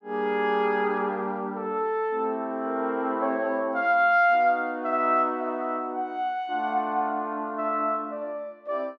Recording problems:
none

